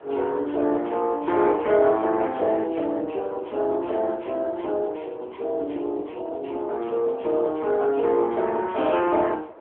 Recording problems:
telephone audio; 300 Hz to 2.7 kHz, AMR-NB
wind noise; below 810 Hz, SNR 23 dB

